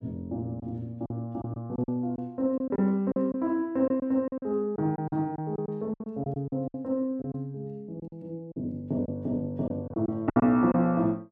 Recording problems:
packet loss; 10% of the sound replaced, filled with silence

